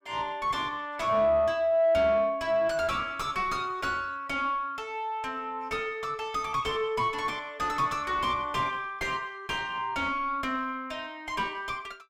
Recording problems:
distortion; soft clipping, signal-to-distortion ratio 8 dB

